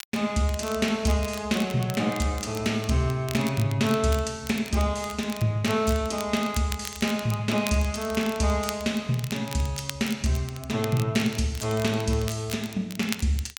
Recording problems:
crackling; vinyl, SNR 14 dB

